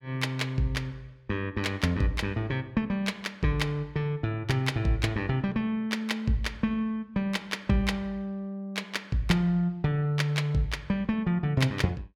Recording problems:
none

